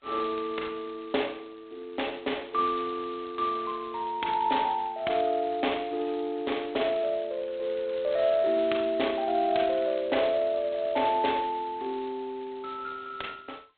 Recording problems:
telephone audio; 320 Hz to 3.6 kHz, G.726

